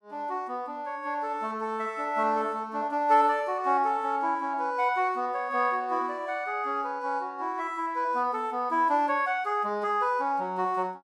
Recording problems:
none

